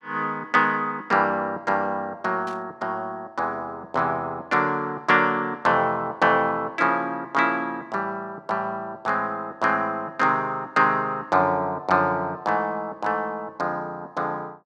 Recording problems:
burst of static; at 2.5 s; peak -15 dB vs average level

